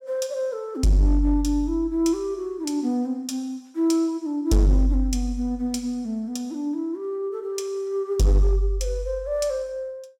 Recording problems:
distorted audio; hard clipping, uneven, signal-to-distortion ratio 12 dB

